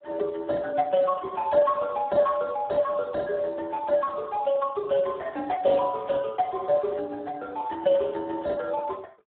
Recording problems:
telephone audio; 300 Hz to 2 kHz, Speex

